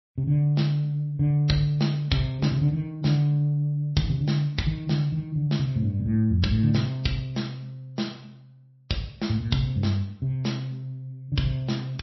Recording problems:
lossy codec; MP3, log-spectral distance 2 dB, nothing above 5.7 kHz

